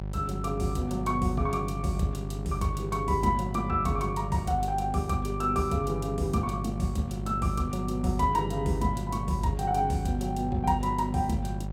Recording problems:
mains hum; 50 Hz, harmonics up to 800 Hz, SNR 6 dB

